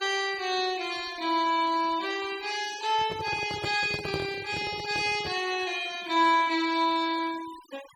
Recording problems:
denoising artefacts; signal-to-artefact ratio 17 dB
handling noise; from 3 to 5.5 s; peak -1 dB vs average level

